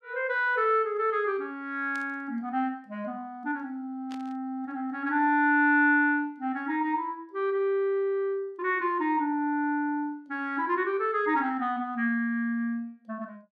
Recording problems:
burst of static; at 2 s and at 4 s; peak -15 dB vs average level

